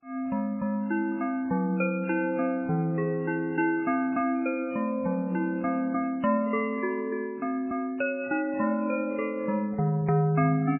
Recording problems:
lossy compression; MP3, log-spectral distance 2 dB, nothing above 2.4 kHz

